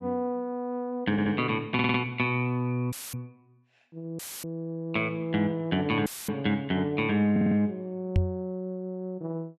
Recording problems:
audio stuttering; at 1 s, at 1.5 s and at 7.5 s
dropout; at 3 s, at 4 s and at 6 s; filled with static
knock on the microphone; at 8 s; peak +7 dB vs average level

